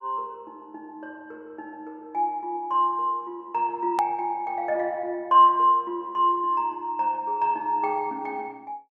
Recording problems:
click at an edit; at 4 s

